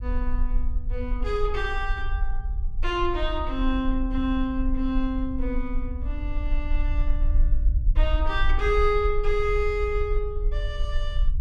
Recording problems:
low-frequency rumble; below 48 Hz, strongest tone 22 Hz, SNR 1 dB

